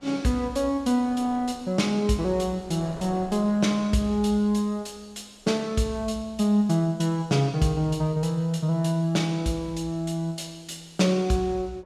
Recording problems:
wind noise; below 820 Hz, SNR 26 dB

